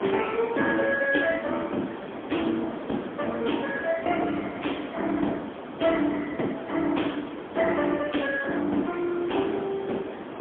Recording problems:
phone line; 170 Hz to 3.4 kHz, AMR-NB, then MP3
background hiss; SNR 9 dB

